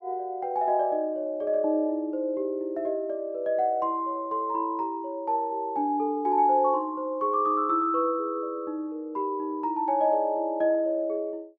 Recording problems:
none

